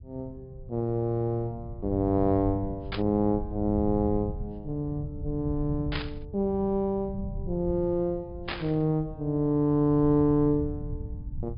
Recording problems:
treble missing; nothing above 5.1 kHz
low-frequency rumble; below 120 Hz, SNR 12 dB
burst of static; at 3 s, at 6 s and at 8.5 s; peak -1 dB vs average level

